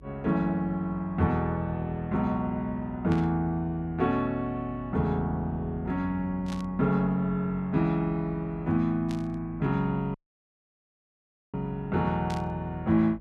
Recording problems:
electrical hum; 50 Hz, harmonics up to 550 Hz, SNR 20 dB
static burst; 4 times, first at 3 s; peak -9 dB vs average level
audio cutting out; at 10 s for 1.5 s

